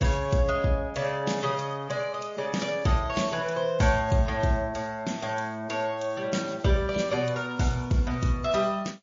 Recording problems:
lossy codec; MP3, then MP3, log-spectral distance 3 dB, nothing above 6 kHz

